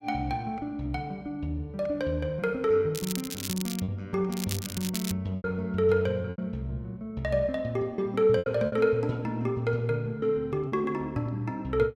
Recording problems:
lost packets; 4% of the sound replaced, filled with repeated pitch periods
crackle; at 3 s and at 4.5 s; loose cable, SNR 8 dB

